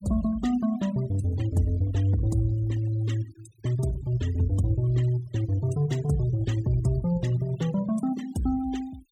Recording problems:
noise reduction artefacts; signal-to-artefact ratio 20 dB

